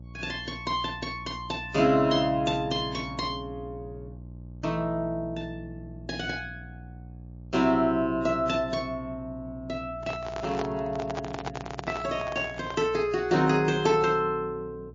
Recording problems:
lossy compression; MP3, log-spectral distance 2 dB, nothing above 7.3 kHz
hum; 60 Hz, harmonics up to 600 Hz, SNR 16 dB
microphone handling noise; from 10 to 13 s; peak -1 dB vs average level

